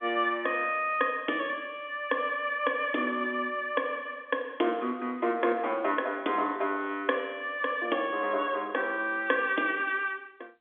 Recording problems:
telephone audio; 240 Hz to 3.5 kHz, G.711

